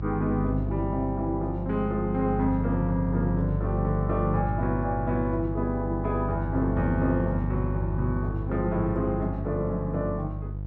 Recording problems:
hum; 50 Hz, harmonics up to 500 Hz, SNR 3 dB

